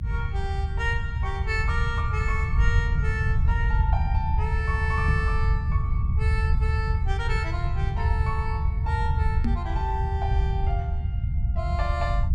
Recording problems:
rumble; below 96 Hz, SNR -6 dB
microphone thump; at 5 s and at 9.5 s; peak +7 dB vs average level

